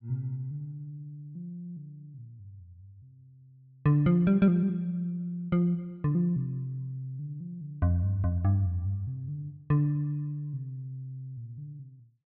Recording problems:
treble cut off; nothing above 5.5 kHz

